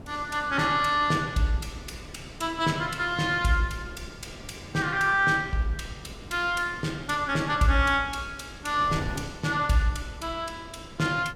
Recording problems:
wind on the microphone; below 400 Hz, SNR 17 dB

